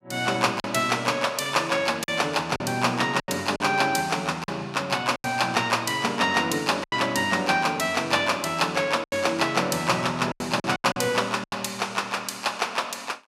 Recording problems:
lost packets; 6% of the sound replaced, filled with silence

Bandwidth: 15.5 kHz